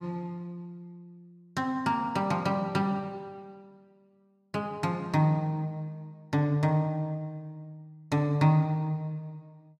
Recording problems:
none

